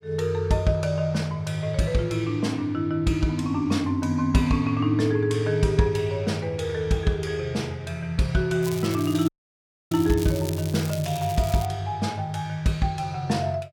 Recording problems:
crackling; from 8.5 to 12 s; loose cable, SNR 14 dB
dropout; at 9.5 s for 0.5 s

